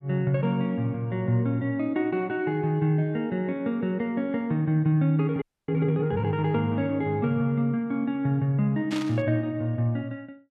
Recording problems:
audio freezing; at 5.5 s
static burst; at 9 s; peak -7 dB vs average level

